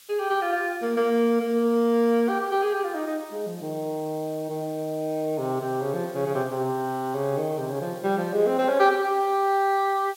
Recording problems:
hiss; SNR 23 dB

